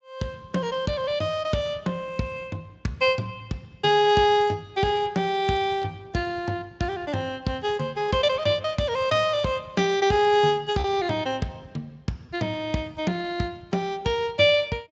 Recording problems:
lossy compression; Speex, log-spectral distance 3 dB
packet loss; 1.3% of the sound replaced, filled with repeated pitch periods

